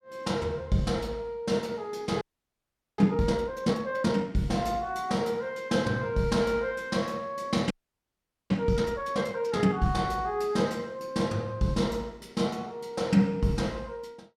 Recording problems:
frozen audio; at 2 s for 1 s and at 7.5 s for 1 s

